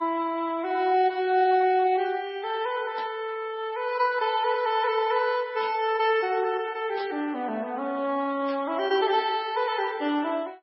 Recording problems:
codec artefacts; MP3, then Vorbis, log-spectral distance 2 dB, nothing above 4.5 kHz
static burst; 4 times, first at 3 s; peak -10 dB vs average level

